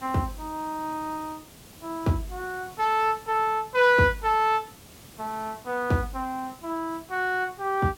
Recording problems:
hiss; slope -3 dB per octave, SNR 21 dB

